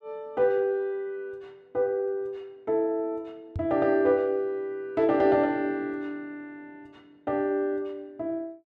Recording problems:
knock on the microphone; at 3.5 s; peak -2 dB vs average level

